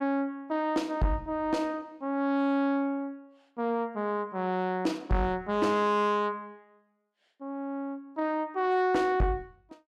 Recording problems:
distorted audio; soft clipping, signal-to-distortion ratio 12 dB

